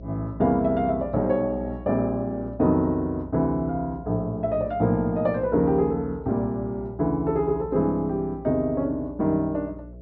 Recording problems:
treble cut off; nothing above 6.5 kHz
hum; 60 Hz, harmonics up to 660 Hz, SNR 17 dB

